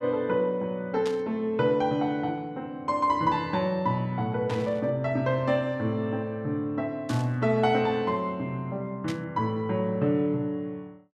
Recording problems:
burst of static; 4 times, first at 1 s; peak -7 dB vs average level

